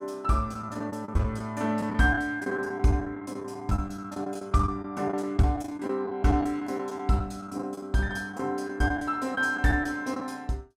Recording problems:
lost packets; 11% of the sound replaced, filled with the last packet

